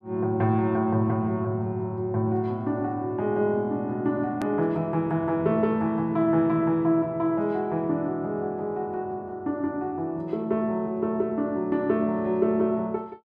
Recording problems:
hard cut with a click; at 4.5 s

